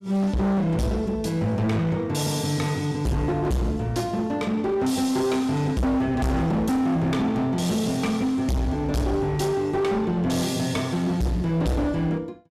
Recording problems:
distortion; hard clipping, uneven, signal-to-distortion ratio 6 dB

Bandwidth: 14.5 kHz